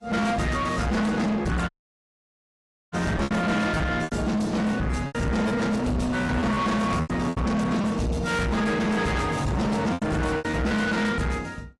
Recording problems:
lossy codec; AAC, log-spectral distance 3 dB, nothing above 11.3 kHz
distortion; soft clipping, signal-to-distortion ratio 7 dB
lost packets; 7% of the sound replaced, filled with repeated pitch periods
dropout; at 1.5 s for 1 s

